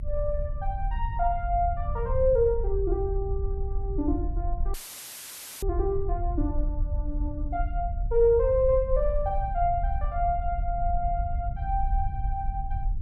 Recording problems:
low-frequency rumble; below 64 Hz, SNR 3 dB
audio cutting out; at 4.5 s for 1 s; filled with static

